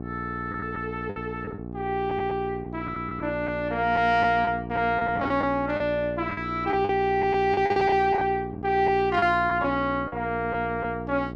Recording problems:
electrical hum; 60 Hz, harmonics up to 1.1 kHz, SNR 10 dB
lost packets; 8% of the sound replaced, filled with the last packet

